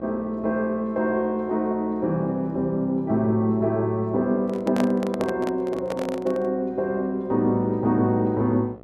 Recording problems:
hum; 60 Hz, harmonics up to 1.4 kHz, SNR 22 dB
handling noise; from 4.5 to 6.5 s; peak 0 dB vs average level

